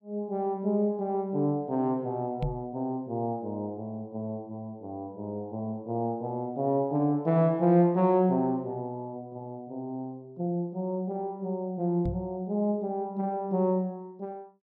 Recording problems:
microphone thump; at 2.5 s and at 12 s; peak +2 dB vs average level

